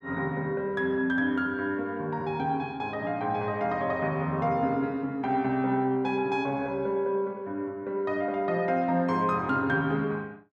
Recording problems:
none

